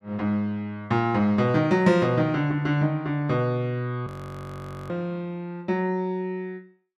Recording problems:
audio freezing; at 4 s for 1 s

